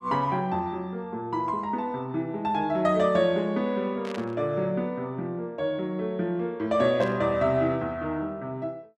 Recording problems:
static burst; at 4 s and at 7 s; peak -8 dB vs average level

